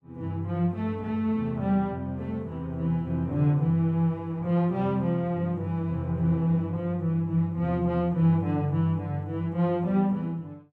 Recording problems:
none

